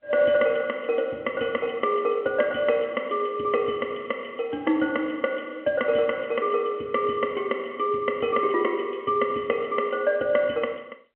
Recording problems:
phone line; 190 Hz to 3.4 kHz, G.711

